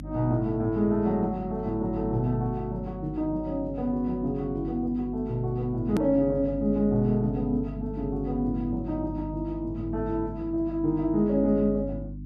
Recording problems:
hum; 50 Hz, harmonics up to 300 Hz, SNR 10 dB
hard cut with a click; at 6 s

